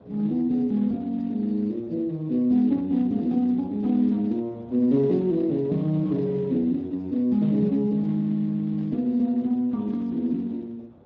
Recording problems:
lossy compression; Speex, log-spectral distance 2 dB
wind noise; below 540 Hz, SNR 25 dB

